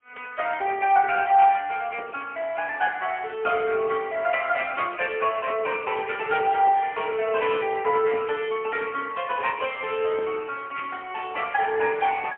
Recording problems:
telephone audio; 300 Hz to 3.1 kHz, AMR-NB, then MP3

